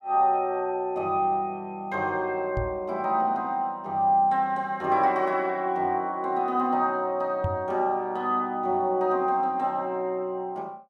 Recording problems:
microphone bump; at 2.5 s and at 7.5 s; peak 0 dB vs average level

